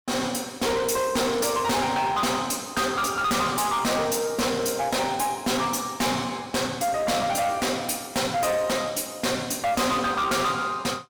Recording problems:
distorted audio; hard clipping, uneven, signal-to-distortion ratio 6 dB

